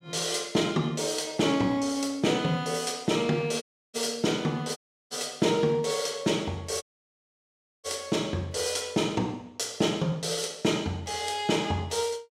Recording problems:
audio cutting out; at 3.5 s, at 5 s and at 7 s for 1 s

